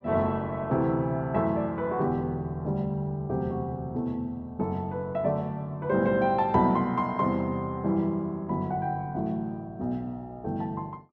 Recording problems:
none

